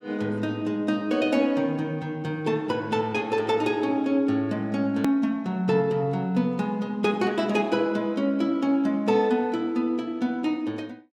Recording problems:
edit click; at 5 s

